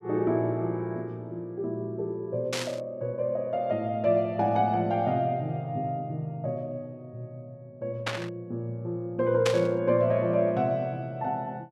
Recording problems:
static burst; at 2.5 s, at 8 s and at 9.5 s; peak +3 dB vs average level

